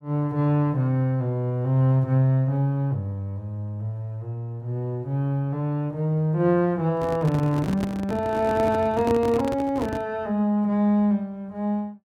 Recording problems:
handling noise; from 7 to 10 s; peak -2 dB vs average level

